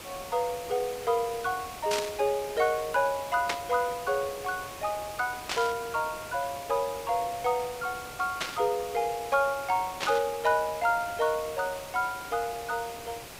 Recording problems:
hiss; slope -3 dB per octave, SNR 12 dB
burst of static; 5 times, first at 2 s; peak +4 dB vs average level

